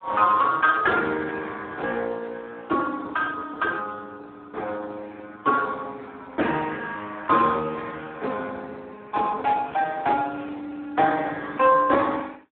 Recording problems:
phone line; 220 Hz to 3.8 kHz, Speex

